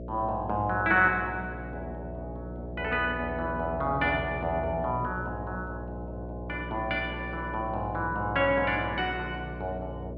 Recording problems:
mains hum; 60 Hz, harmonics up to 660 Hz, SNR 10 dB

